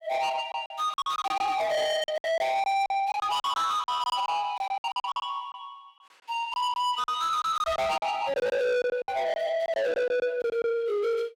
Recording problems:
distortion; soft clipping, signal-to-distortion ratio 8 dB
lost packets; 13% of the sound replaced, filled with silence

